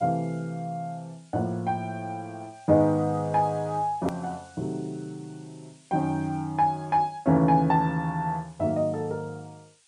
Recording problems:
lossy codec; MP3, log-spectral distance 5 dB, nothing above 13.1 kHz
hiss; slope +4 dB per octave, SNR 29 dB
edit click; at 4 s

